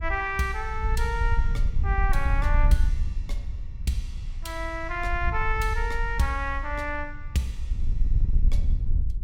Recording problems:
wind on the microphone; below 60 Hz, SNR 0 dB

